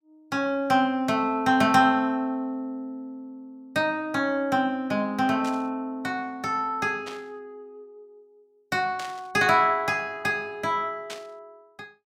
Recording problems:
static burst; 4 times, first at 5.5 s; peak -8 dB vs average level

